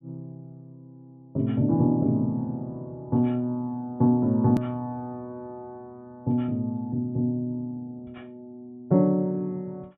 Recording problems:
low-pass filter; nothing above 4 kHz
edit click; at 4.5 s

